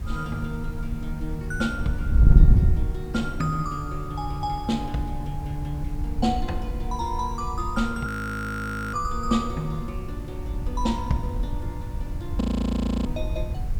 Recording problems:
hiss; slope -5 dB per octave, SNR 19 dB
wind noise; below 88 Hz, SNR -1 dB
frozen audio; at 8 s for 1 s and at 12 s for 0.5 s

